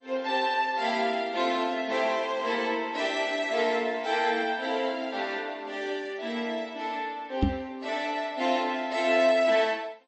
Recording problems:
codec artefacts; MP2, then MP3, log-spectral distance 3 dB, nothing above 8 kHz
microphone bump; at 7.5 s; peak +7 dB vs average level

